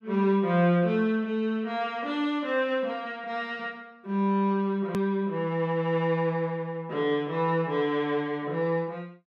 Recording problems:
edit click; at 5 s

